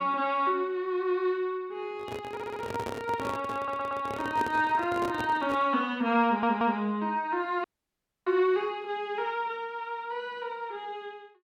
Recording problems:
handling noise; from 2 to 5.5 s; peak -1 dB vs average level
stutter; at 2.5 s, at 3.5 s and at 6.5 s
dropout; at 7.5 s for 0.5 s

